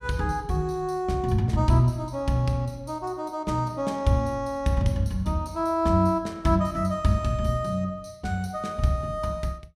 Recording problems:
none

